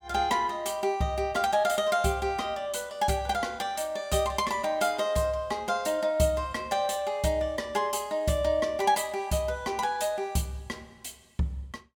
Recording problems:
none

